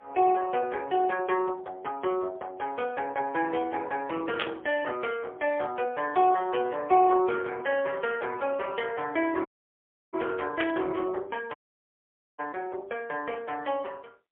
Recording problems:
phone line; 320 Hz to 3.3 kHz, AMR-NB, then MP3
burst of static; at 4.5 s and at 11 s; peak +2 dB vs average level
audio cutting out; at 9.5 s for 0.5 s and at 12 s for 1 s

